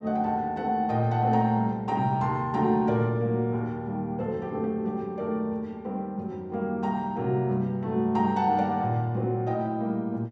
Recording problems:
none

